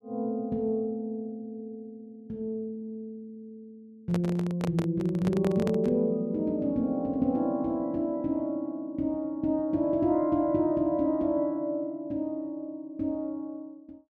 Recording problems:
microphone handling noise; from 4 to 6 s; peak -1 dB vs average level

